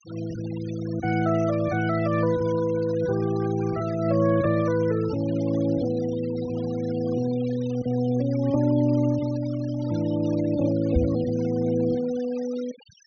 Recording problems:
treble missing; nothing above 6.4 kHz
denoising artefacts; signal-to-artefact ratio 20 dB
knock on the microphone; at 11 s; peak +5 dB vs average level

